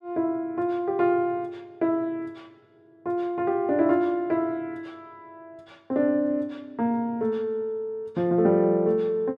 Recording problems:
none

